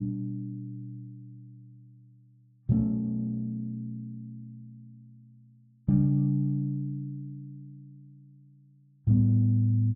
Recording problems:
none

